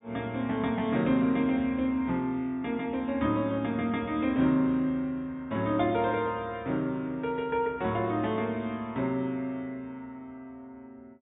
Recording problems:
treble cut off; nothing above 4 kHz

